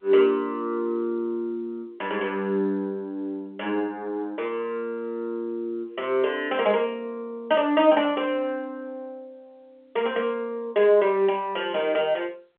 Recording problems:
telephone audio; 260 Hz to 3.3 kHz, G.711

